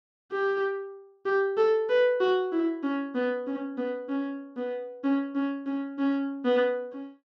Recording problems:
none

